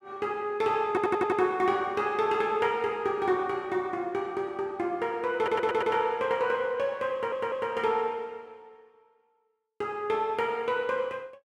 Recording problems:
audio stuttering; at 1 s, at 5.5 s and at 7 s

